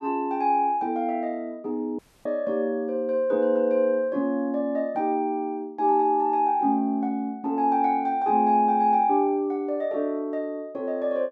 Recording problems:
dropout; at 2 s

